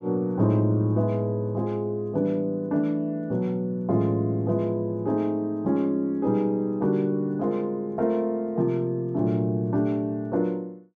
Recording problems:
none

